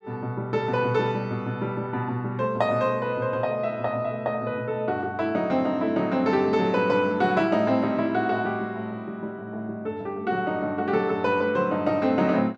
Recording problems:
none

